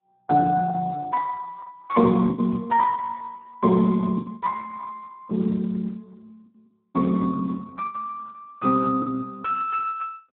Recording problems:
phone line; 150 Hz to 2 kHz, Speex
packet loss; 7% of the sound replaced, filled with the last packet

